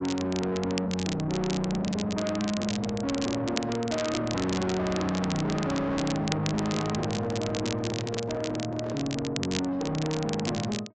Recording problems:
treble cut off; nothing above 8 kHz
distorted audio; soft clipping, signal-to-distortion ratio 6 dB
crackle; vinyl, SNR 8 dB
microphone handling noise; from 6.5 to 9 s; peak -4 dB vs average level

